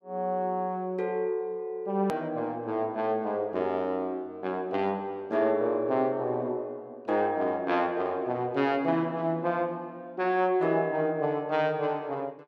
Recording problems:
click at an edit; at 2 s

